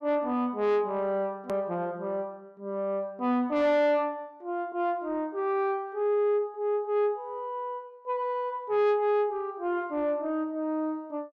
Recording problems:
distortion; soft clipping, signal-to-distortion ratio 11 dB
edit click; at 1.5 s

